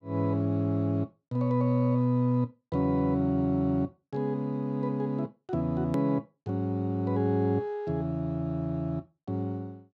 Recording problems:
hard cut with a click; at 6 s

